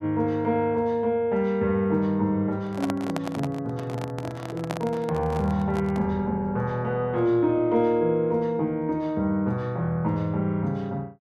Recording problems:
handling noise; from 2.5 to 6 s; peak -1 dB vs average level

